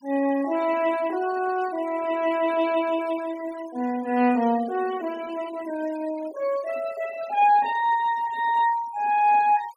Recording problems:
denoising artefacts; signal-to-artefact ratio 20 dB

